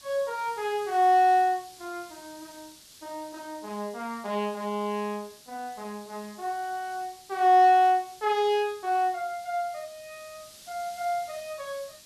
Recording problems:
background hiss; SNR 22 dB

